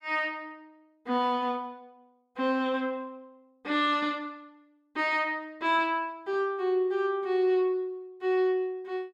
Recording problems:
none

